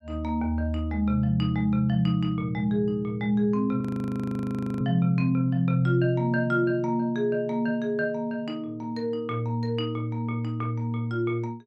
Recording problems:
audio freezing; at 4 s for 1 s

